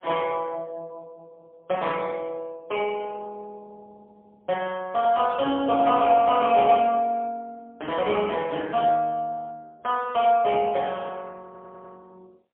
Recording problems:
telephone audio; 240 Hz to 3.4 kHz, AMR-NB, then MP3
stutter; at 11 s

